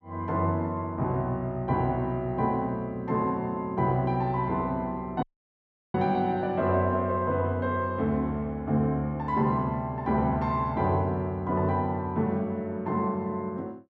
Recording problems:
dropout; at 5 s for 0.5 s

